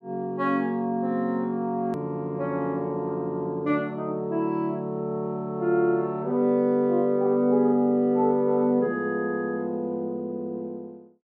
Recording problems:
hard cut with a click; at 2 s

